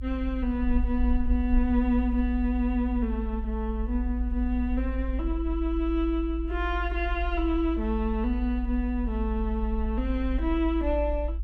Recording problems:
rumble; below 56 Hz, strongest tone 54 Hz, SNR 3 dB

